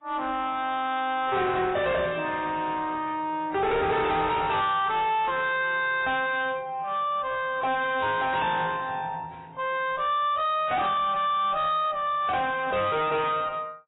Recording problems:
lossy compression; AAC, log-spectral distance 3 dB, nothing above 3.8 kHz
distortion; soft clipping, signal-to-distortion ratio 7 dB

